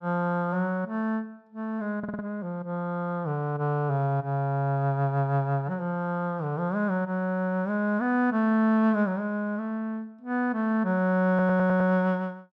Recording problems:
audio stuttering; at 2 s and at 11 s

